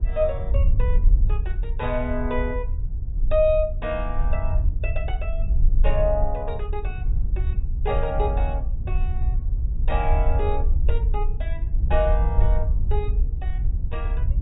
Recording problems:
treble cut off; nothing above 4 kHz
low-frequency rumble; below 60 Hz, SNR -3 dB

